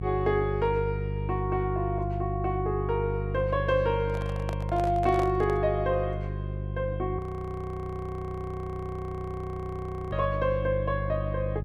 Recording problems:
hum; 50 Hz, harmonics up to 500 Hz, SNR 4 dB
microphone handling noise; from 4 to 5.5 s; peak -3 dB vs average level
audio freezing; at 7 s for 3 s

